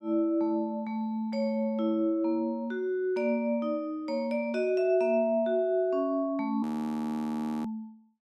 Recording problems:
audio freezing; at 6.5 s for 1 s

